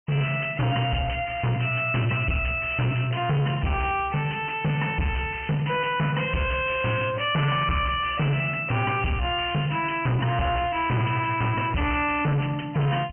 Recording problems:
treble cut off; nothing above 3.1 kHz
distortion; soft clipping, signal-to-distortion ratio 6 dB

